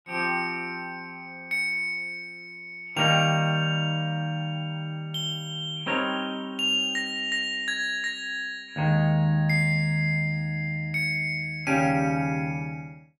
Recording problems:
none

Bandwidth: 16 kHz